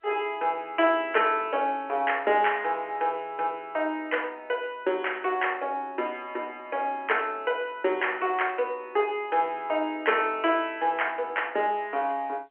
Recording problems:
telephone audio; 320 Hz to 3.2 kHz, G.711

